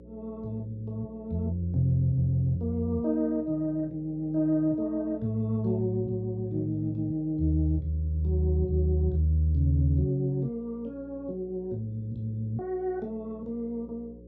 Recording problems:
hum; 60 Hz, harmonics up to 540 Hz, SNR 21 dB

